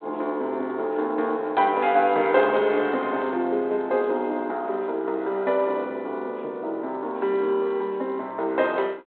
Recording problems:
telephone audio; 280 Hz to 4 kHz, G.726

